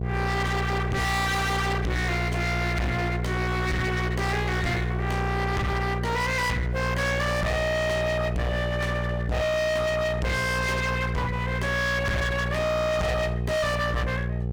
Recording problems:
distorted audio; hard clipping, uneven, signal-to-distortion ratio 6 dB
hum; 60 Hz, harmonics up to 2.1 kHz, SNR 3 dB

